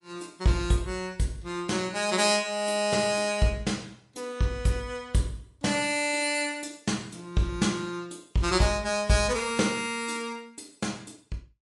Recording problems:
lossy codec; MP3, log-spectral distance 4 dB

